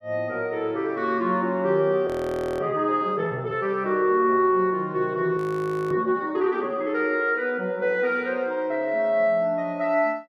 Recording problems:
frozen audio; at 2 s for 0.5 s and at 5.5 s for 0.5 s

